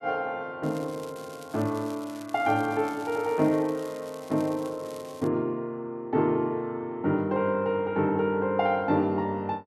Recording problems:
crackling; from 0.5 to 5.5 s; loose cable, SNR 22 dB

